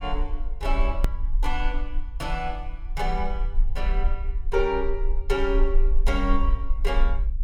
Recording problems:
rumble; below 40 Hz, strongest tone 24 Hz, SNR -1 dB
hard cut with a click; at 1 s

